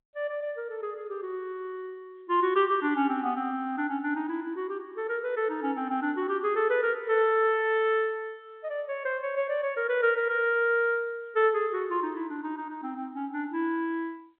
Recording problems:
telephone audio; 240 Hz to 3.7 kHz, G.711

